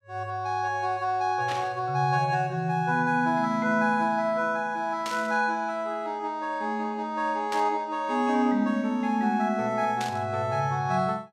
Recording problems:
static burst; 4 times, first at 1.5 s; peak -5 dB vs average level

